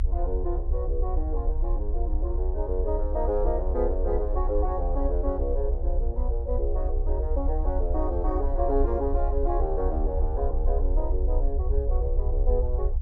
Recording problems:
low-frequency rumble; below 62 Hz, strongest tone 30 Hz, SNR -2 dB

